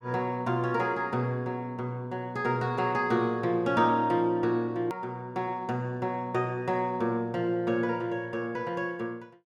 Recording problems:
click at an edit; at 5 s

